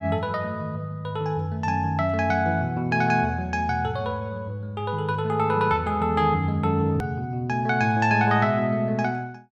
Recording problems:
click at an edit; at 7 s

